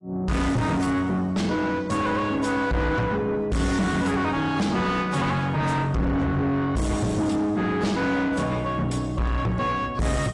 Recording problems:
lossy compression; AAC, log-spectral distance 2 dB, nothing above 10.4 kHz
distortion; soft clipping, signal-to-distortion ratio 5 dB

